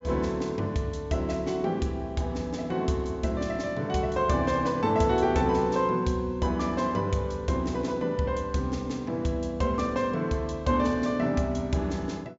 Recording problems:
treble missing; nothing above 8 kHz

